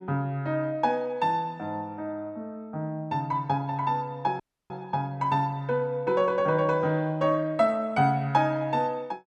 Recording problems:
audio cutting out; at 4.5 s

